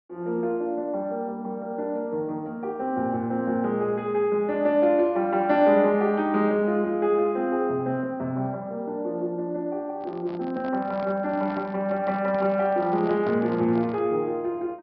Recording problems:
treble missing; nothing above 5.5 kHz
handling noise; from 10 to 14 s; peak -9 dB vs average level

